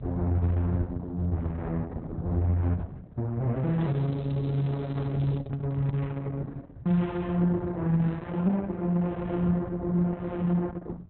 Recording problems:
codec artefacts; Opus, log-spectral distance 3 dB, nothing above 3.9 kHz
hum; 60 Hz, harmonics up to 720 Hz, SNR 26 dB
low-frequency rumble; below 130 Hz, SNR 10 dB
crackling; from 4 to 5.5 s; loose cable, SNR 29 dB
microphone handling noise; from 4.5 to 6 s; peak -6 dB vs average level

